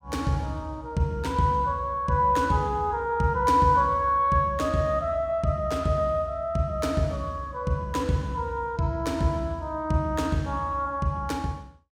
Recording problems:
none

